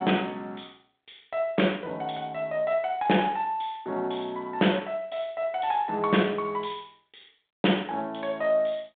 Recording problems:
phone line; 240 Hz to 3.5 kHz, G.726

